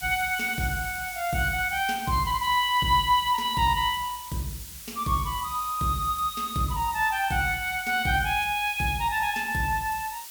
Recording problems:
hiss; slope +3 dB per octave, SNR 13 dB

